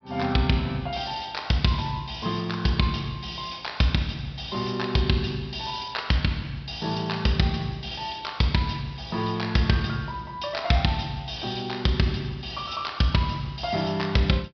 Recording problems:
low-pass filter; nothing above 5.5 kHz

